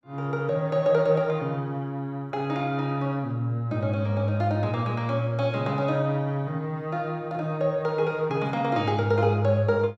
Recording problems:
none

